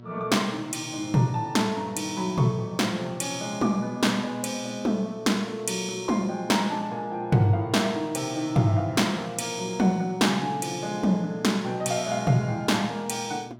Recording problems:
electrical hum; 60 Hz, harmonics up to 960 Hz, SNR 20 dB

